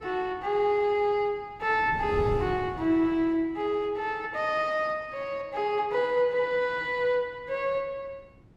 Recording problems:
wind noise; below 280 Hz, SNR 12 dB

